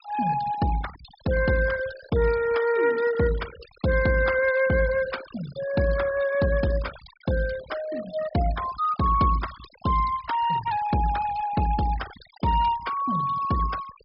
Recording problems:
treble cut off; nothing above 5.5 kHz
denoising artefacts; signal-to-artefact ratio 16 dB

